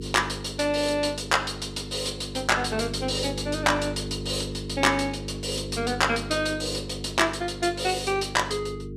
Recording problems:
electrical hum; 50 Hz, harmonics up to 450 Hz, SNR 10 dB

